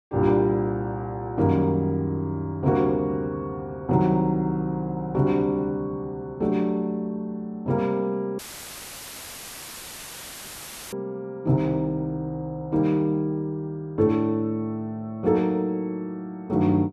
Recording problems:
dropout; at 8.5 s for 2.5 s; filled with static

